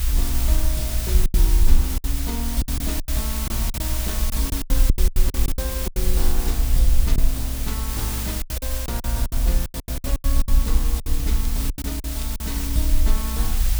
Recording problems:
background hiss; slope +1 dB per octave, SNR -2 dB
low-frequency rumble; below 60 Hz, strongest tone 20 Hz, SNR -7 dB
lost packets; 13% of the sound replaced, filled with silence
crackle; from 4.5 to 6 s, at 8.5 s and from 10 to 12 s; loose cable, SNR 15 dB

